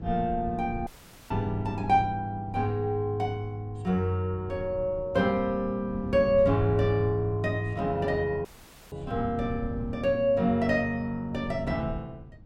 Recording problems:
wind noise; below 160 Hz, SNR 14 dB
dropout; at 1 s and at 8.5 s

